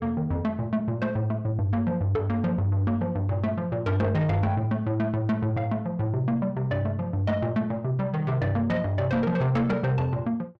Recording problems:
distorted audio; soft clipping, signal-to-distortion ratio 11 dB

